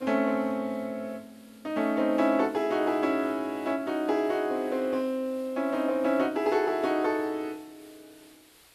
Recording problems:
hiss; SNR 27 dB

